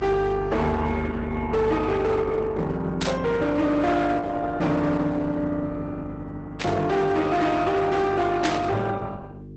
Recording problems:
lossy codec; Opus, log-spectral distance 3 dB, nothing above 8 kHz
distortion; hard clipping, signal-to-distortion ratio 11 dB
hum; 50 Hz, harmonics up to 450 Hz, SNR 13 dB
static burst; at 3 s, at 6.5 s and at 8.5 s; peak 0 dB vs average level

